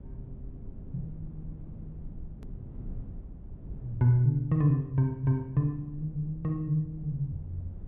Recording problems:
low-pass filter; nothing above 4 kHz
low-frequency rumble; below 130 Hz, SNR 16 dB
hard cut with a click; at 2.5 s

